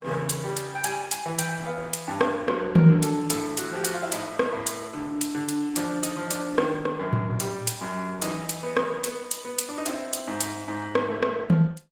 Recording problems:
codec artefacts; Opus, log-spectral distance 5 dB, nothing above 18.5 kHz

